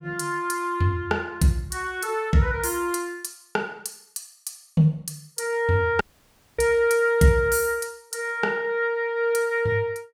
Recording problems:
audio cutting out; at 6 s for 0.5 s

